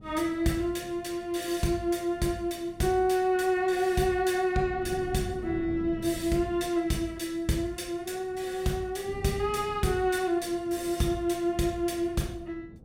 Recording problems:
wind on the microphone; below 250 Hz, SNR 17 dB

